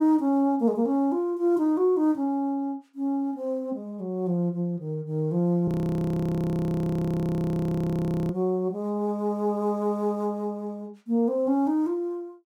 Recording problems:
frozen audio; at 5.5 s for 2.5 s

